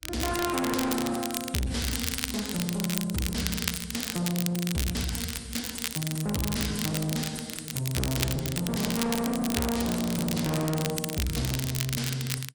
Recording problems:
lossy compression; AAC, log-spectral distance 4 dB
distorted audio; soft clipping, signal-to-distortion ratio 5 dB
crackling; vinyl, SNR 4 dB

